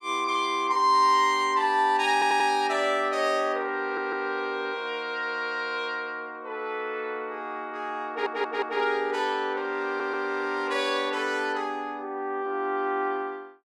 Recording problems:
audio stuttering; 4 times, first at 2 s

